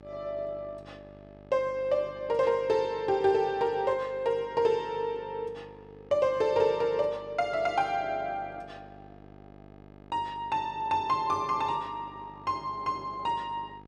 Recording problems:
hum; 50 Hz, harmonics up to 2.1 kHz, SNR 23 dB

